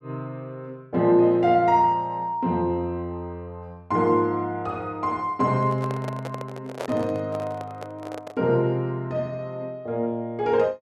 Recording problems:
microphone handling noise; from 5.5 to 8.5 s; peak -3 dB vs average level

